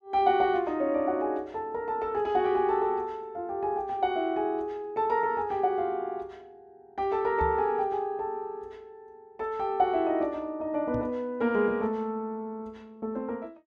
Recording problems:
knock on the microphone; at 7.5 s and at 11 s; peak -4 dB vs average level

